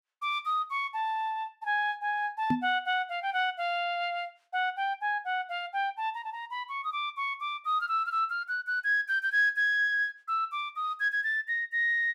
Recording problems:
microphone bump; at 2.5 s; peak +4 dB vs average level

